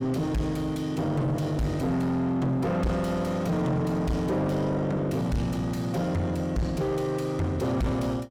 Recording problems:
distortion; soft clipping, signal-to-distortion ratio 6 dB

